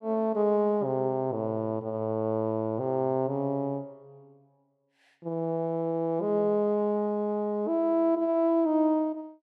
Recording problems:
none

